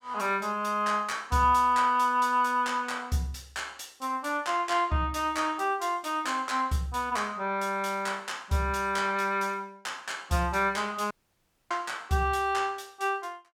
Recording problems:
dropout; at 11 s for 0.5 s

